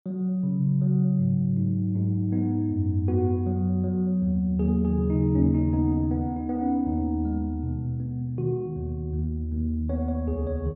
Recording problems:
none

